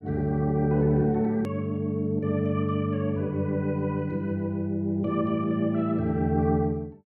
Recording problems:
hard cut with a click; at 1.5 s

